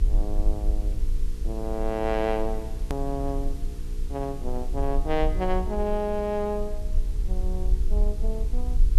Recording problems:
mains hum; 60 Hz, harmonics up to 480 Hz, SNR 11 dB
background hiss; slope 0 dB per octave, SNR 21 dB
low-frequency rumble; below 44 Hz, strongest tone 22 Hz, SNR 1 dB
click at an edit; at 3 s

